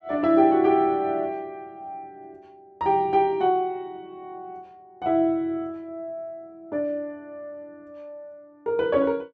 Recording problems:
none

